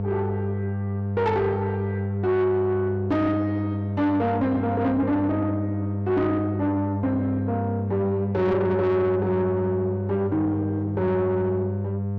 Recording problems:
distortion; soft clipping, signal-to-distortion ratio 11 dB
hum; 50 Hz, harmonics up to 700 Hz, SNR 4 dB

